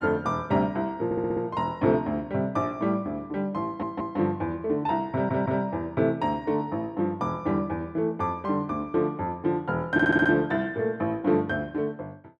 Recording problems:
audio stuttering; 4 times, first at 1 s

